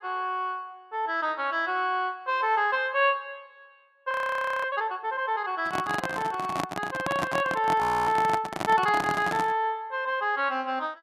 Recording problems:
frozen audio; at 4 s for 0.5 s and at 8 s
microphone handling noise; from 5.5 to 9.5 s; peak +1 dB vs average level

